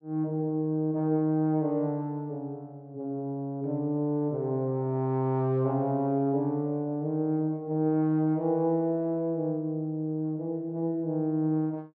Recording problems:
low-pass filter; nothing above 7.4 kHz

